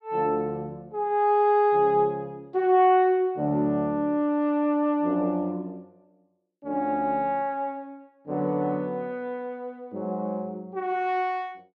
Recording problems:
none

